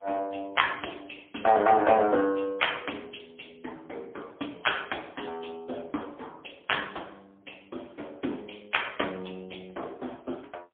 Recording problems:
phone line; 260 Hz to 3.4 kHz, AMR-NB, then MP3

